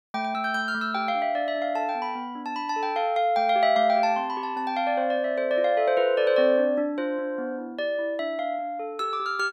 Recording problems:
none

